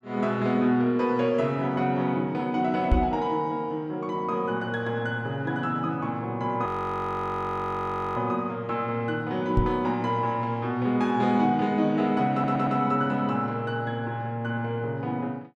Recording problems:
knock on the microphone; at 3 s and at 9.5 s; peak +7 dB vs average level
audio freezing; at 6.5 s for 1.5 s
audio stuttering; at 12 s

